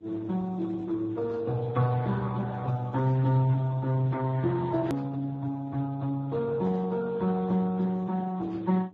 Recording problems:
codec artefacts; Speex, then Vorbis, log-spectral distance 3 dB, nothing above 13.1 kHz
electrical hum; 50 Hz, harmonics up to 900 Hz, SNR 26 dB
edit click; at 5 s

